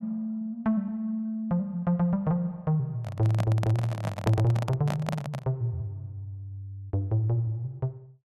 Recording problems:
handling noise; from 3 to 5.5 s; peak +2 dB vs average level

